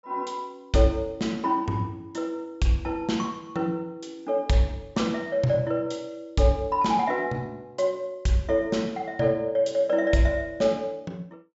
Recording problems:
low-pass filter; nothing above 8 kHz

